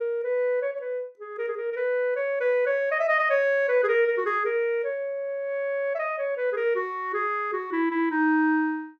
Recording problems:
none

